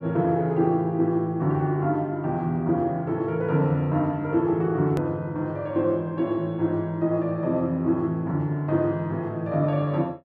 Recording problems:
hard cut with a click; at 5 s

